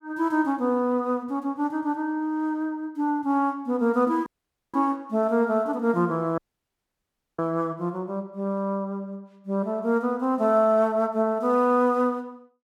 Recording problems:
dropout; at 4.5 s and at 6.5 s for 1 s

